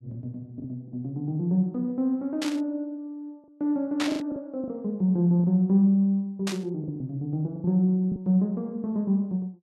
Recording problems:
lost packets; 5% of the sound replaced, filled with the last packet
burst of static; at 2.5 s, at 4 s and at 6.5 s; peak -1 dB vs average level

